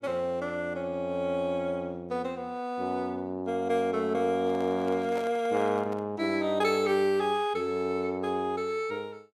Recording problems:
handling noise; from 4.5 to 6 s; peak -7 dB vs average level

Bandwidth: 15 kHz